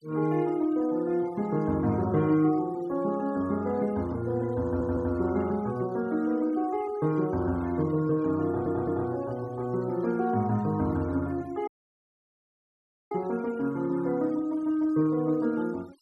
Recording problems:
denoising artefacts; signal-to-artefact ratio 23 dB
audio stuttering; at 4.5 s and at 8.5 s
audio cutting out; at 12 s for 1.5 s

